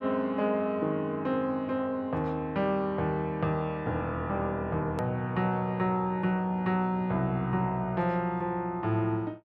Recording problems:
click at an edit; at 5 s

